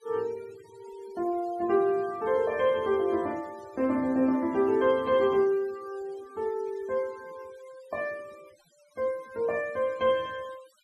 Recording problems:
denoising artefacts; signal-to-artefact ratio 25 dB

